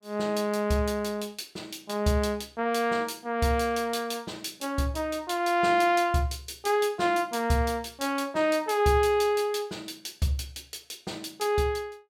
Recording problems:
none

